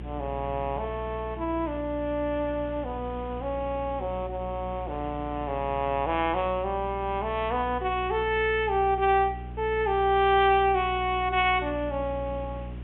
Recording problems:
treble missing; nothing above 3.5 kHz
hum; 60 Hz, harmonics up to 420 Hz, SNR 12 dB
hiss; SNR 23 dB

